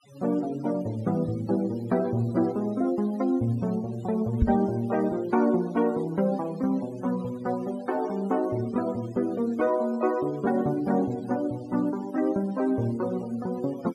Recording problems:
noise reduction artefacts; signal-to-artefact ratio 23 dB
knock on the microphone; at 4.5 s; peak +8 dB vs average level

